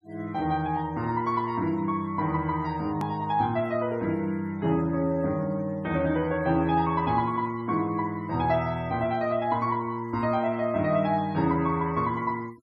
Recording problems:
denoising artefacts; signal-to-artefact ratio 27 dB
click at an edit; at 3 s

